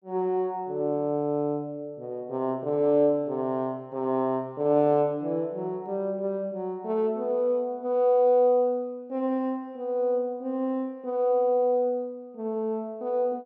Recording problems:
none

